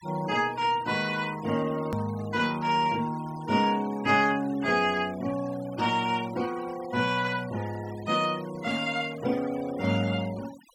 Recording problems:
noise reduction artefacts; signal-to-artefact ratio 18 dB
click at an edit; at 2 s

